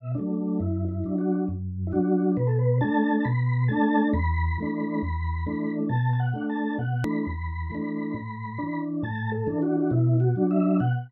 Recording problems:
hard cut with a click; at 7 s

